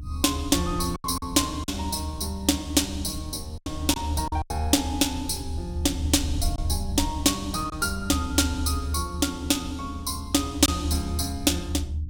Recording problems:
hum; 60 Hz, harmonics up to 300 Hz, SNR 20 dB
low-frequency rumble; below 80 Hz, strongest tone 74 Hz, SNR 7 dB
packet loss; 4% of the sound replaced, filled with silence

